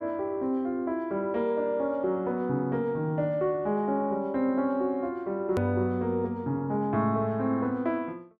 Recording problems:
hard cut with a click; at 5.5 s

